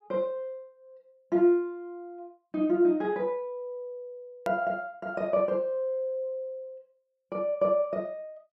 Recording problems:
hard cut with a click; at 4.5 s

